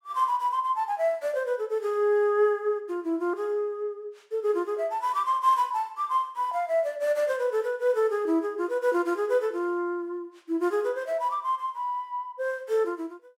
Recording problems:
none

